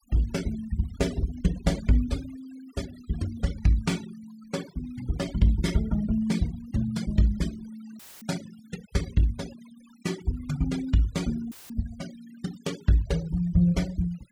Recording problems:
denoising artefacts; signal-to-artefact ratio 18 dB
dropout; at 8 s and at 12 s; filled with static

